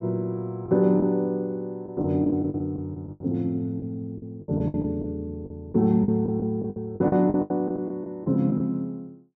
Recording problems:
packet loss; 12% of the sound replaced, filled with the last packet

